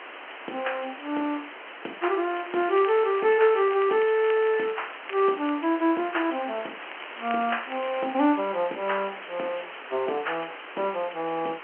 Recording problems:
phone line; 260 Hz to 3.1 kHz, G.711
background hiss; SNR 13 dB
crackling; from 2.5 to 5.5 s and from 7 to 8.5 s; loose cable, SNR 17 dB

